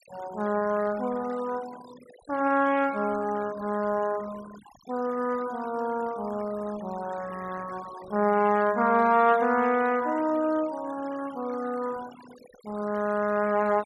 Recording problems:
noise reduction artefacts; signal-to-artefact ratio 19 dB

